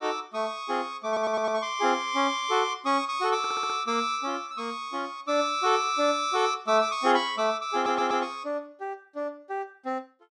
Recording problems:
audio stuttering; at 1 s, at 3.5 s and at 7.5 s

